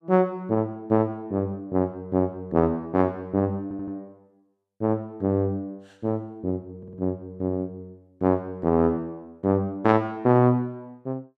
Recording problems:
audio stuttering; at 3.5 s and at 7 s

